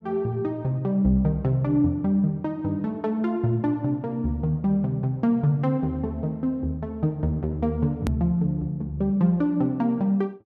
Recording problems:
click at an edit; at 8 s

